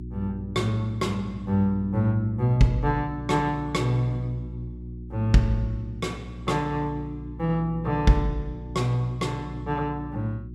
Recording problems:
hum; 60 Hz, harmonics up to 360 Hz, SNR 12 dB

